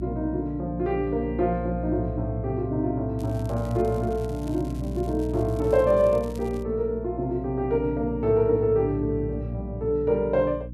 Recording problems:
electrical hum; 60 Hz, harmonics up to 300 Hz, SNR 9 dB
crackling; from 3 to 6.5 s; loose cable, SNR 26 dB

